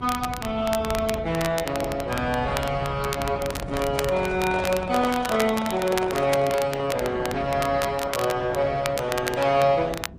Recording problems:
lossy codec; Opus, then Vorbis, log-spectral distance 3 dB
low-frequency rumble; below 180 Hz, SNR 12 dB
crackling; vinyl, SNR 10 dB
microphone handling noise; from 3.5 to 6.5 s; peak -3 dB vs average level

